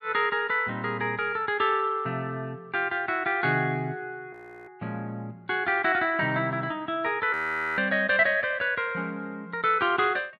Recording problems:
frozen audio; at 4.5 s and at 7.5 s

